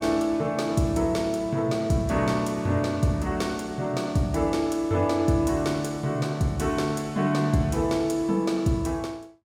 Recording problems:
none

